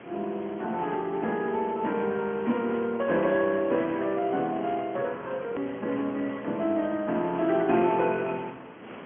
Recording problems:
phone line; 150 Hz to 3.3 kHz, Speex
background hiss; SNR 15 dB
edit click; at 5.5 s

